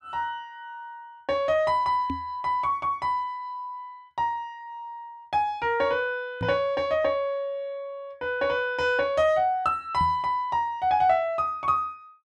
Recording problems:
microphone thump; at 2 s, at 6.5 s and at 10 s; peak -2 dB vs average level

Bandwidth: 12 kHz